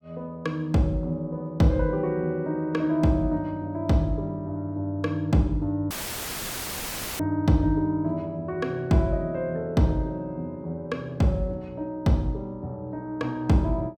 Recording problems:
audio cutting out; at 6 s for 1.5 s; filled with static

